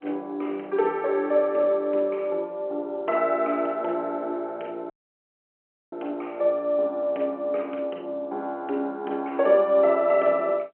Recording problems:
phone line; 220 Hz to 3.6 kHz, G.711
dropout; at 5 s for 1 s

